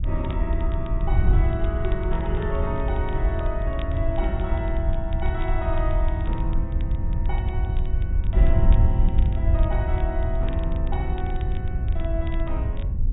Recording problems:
treble cut off; nothing above 4 kHz
wind noise; below 76 Hz, SNR -7 dB
crackle; vinyl, SNR 20 dB

